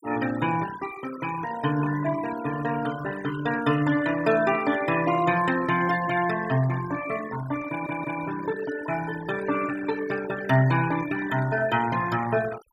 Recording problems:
noise reduction artefacts; signal-to-artefact ratio 12 dB
audio stuttering; at 7.5 s

